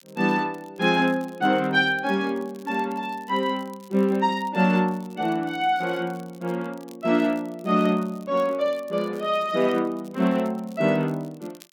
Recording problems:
crackling; vinyl, SNR 29 dB

